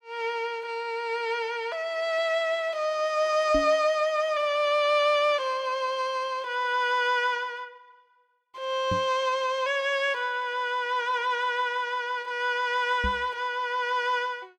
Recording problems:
knock on the microphone; at 3.5 s, at 9 s and at 13 s; peak -1 dB vs average level

